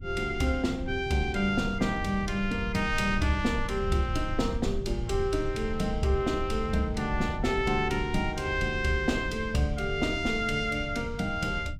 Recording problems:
rumble; below 98 Hz, SNR 8 dB

